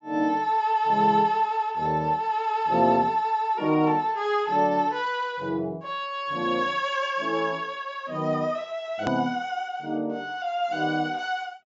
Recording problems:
treble cut off; nothing above 8 kHz
click at an edit; at 9 s

